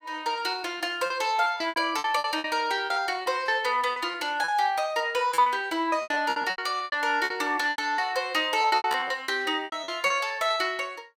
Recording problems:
lost packets; 15% of the sound replaced, filled with repeated pitch periods

